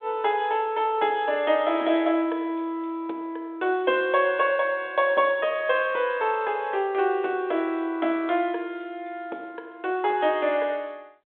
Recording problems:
phone line; 280 Hz to 3.7 kHz, G.726

